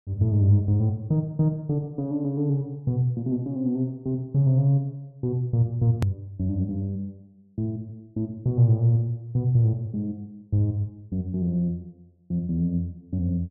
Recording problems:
hard cut with a click; at 6 s

